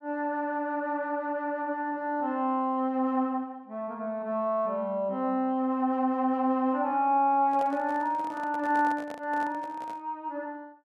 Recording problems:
microphone handling noise; from 7.5 to 10 s; peak -8 dB vs average level

